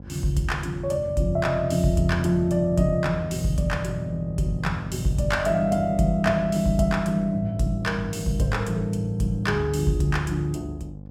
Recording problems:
hum; 50 Hz, harmonics up to 800 Hz, SNR 14 dB

